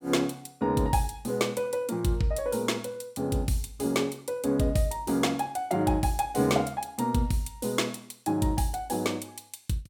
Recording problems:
none

